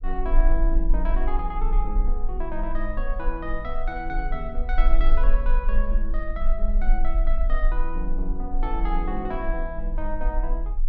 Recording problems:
rumble; below 36 Hz, strongest tone 18 Hz, SNR -5 dB

